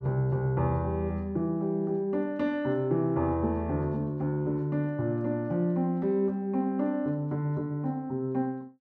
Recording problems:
none

